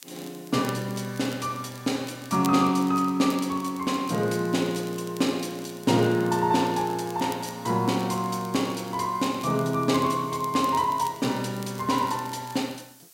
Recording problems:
hiss; slope +2 dB per octave, SNR 25 dB
crackle; vinyl, SNR 21 dB

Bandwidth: 16 kHz